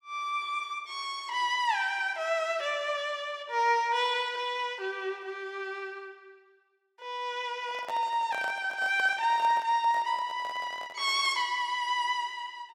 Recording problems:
handling noise; from 7.5 to 11 s; peak -6 dB vs average level

